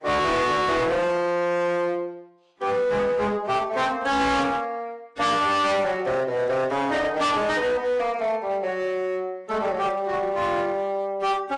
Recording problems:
lossy codec; AAC, log-spectral distance 2 dB, nothing above 10.4 kHz
distorted audio; hard clipping, signal-to-distortion ratio 7 dB

